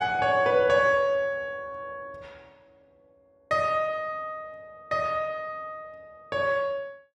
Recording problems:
none

